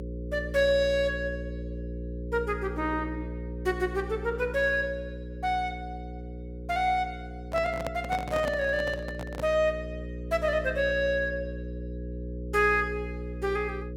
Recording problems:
mains hum; 60 Hz, harmonics up to 540 Hz, SNR 9 dB
microphone handling noise; from 7.5 to 9.5 s; peak -2 dB vs average level

